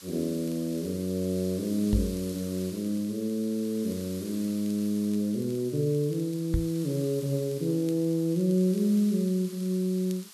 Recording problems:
background hiss; SNR 17 dB
crackling; vinyl, SNR 29 dB
microphone thump; at 2 s and at 6.5 s; peak +4 dB vs average level

